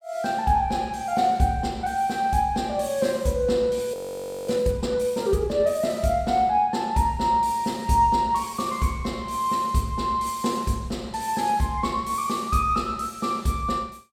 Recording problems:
audio freezing; at 4 s for 0.5 s

